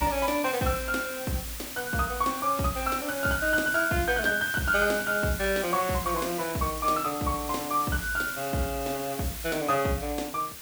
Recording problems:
hiss; slope 0 dB per octave, SNR 8 dB

